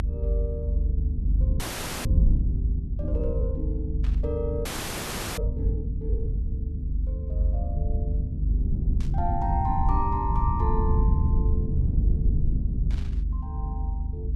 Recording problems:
hum; 50 Hz, harmonics up to 300 Hz, SNR 2 dB
low-frequency rumble; below 80 Hz, SNR -6 dB
frozen audio; at 1.5 s and at 4.5 s for 0.5 s
burst of static; at 4 s, at 9 s and at 13 s; peak -9 dB vs average level

